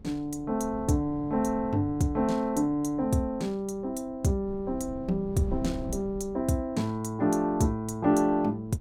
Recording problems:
wind on the microphone; below 170 Hz, SNR 17 dB

